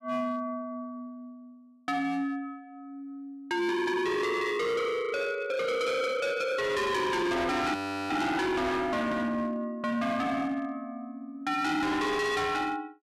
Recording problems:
distortion; hard clipping, signal-to-distortion ratio 7 dB
audio freezing; at 8 s

